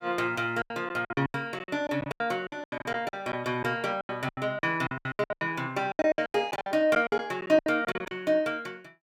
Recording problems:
packet loss; 20% of the sound replaced, filled with silence

